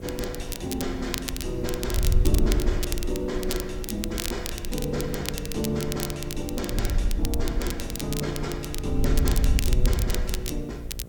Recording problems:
hum; 60 Hz, harmonics up to 1.3 kHz, SNR 16 dB
hiss; SNR 26 dB
wind noise; below 68 Hz, SNR 0 dB
crackle; vinyl, SNR 4 dB

